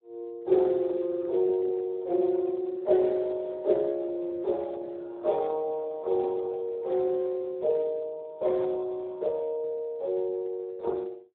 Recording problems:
telephone audio; 320 Hz to 2.1 kHz, Speex

